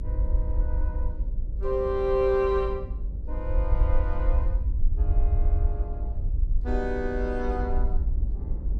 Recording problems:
electrical hum; 60 Hz, harmonics up to 600 Hz, SNR 22 dB
low-frequency rumble; below 58 Hz, SNR 0 dB
wind on the microphone; below 210 Hz, SNR 15 dB

